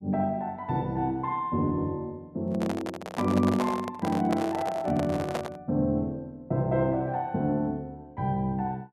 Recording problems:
microphone handling noise; from 2.5 to 5.5 s; peak +2 dB vs average level

